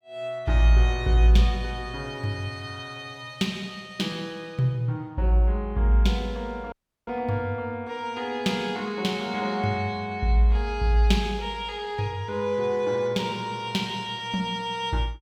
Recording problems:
dropout; at 6.5 s

